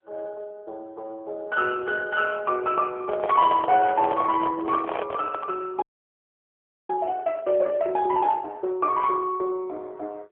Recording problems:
telephone audio; 300 Hz to 2.3 kHz, AMR-NB
microphone handling noise; from 3 to 5.5 s; peak 0 dB vs average level
frozen audio; at 6 s for 1 s

